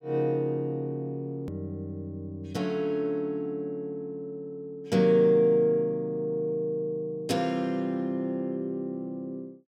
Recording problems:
click at an edit; at 1.5 s

